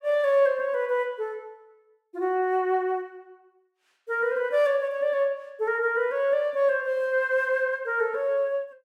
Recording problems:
none

